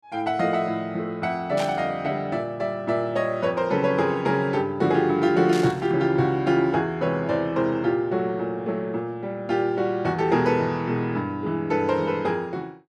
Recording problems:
static burst; at 1.5 s and at 5.5 s; peak -7 dB vs average level

